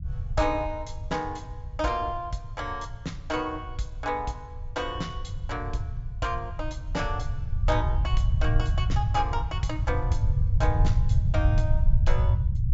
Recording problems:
treble missing; nothing above 8 kHz
rumble; below 100 Hz, SNR -4 dB

